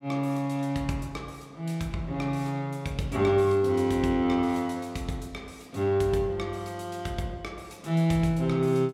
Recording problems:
none

